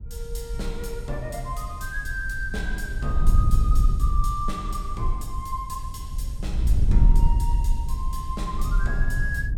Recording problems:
wind noise; below 58 Hz, SNR -6 dB

